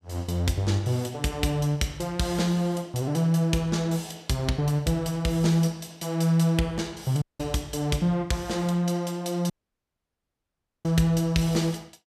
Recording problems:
dropout; at 7 s and at 9.5 s for 1.5 s

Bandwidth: 14.5 kHz